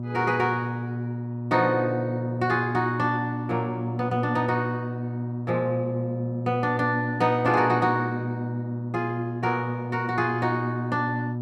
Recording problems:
hum; 60 Hz, harmonics up to 600 Hz, SNR 4 dB

